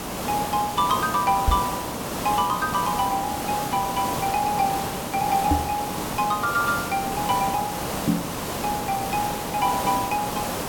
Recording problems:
hum; 60 Hz, harmonics up to 1.2 kHz, SNR 18 dB
hiss; slope -5 dB per octave, SNR 4 dB
microphone thump; at 1.5 s, at 5.5 s and at 8 s; peak +7 dB vs average level

